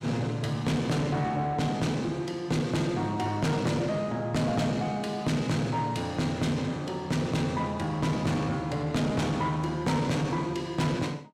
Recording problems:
distorted audio; soft clipping, signal-to-distortion ratio 8 dB

